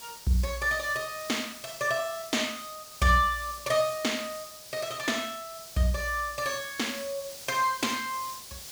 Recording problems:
hiss; SNR 13 dB

